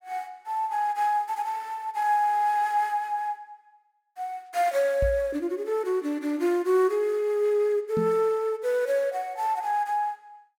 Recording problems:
microphone thump; at 5 s and at 8 s; peak -1 dB vs average level

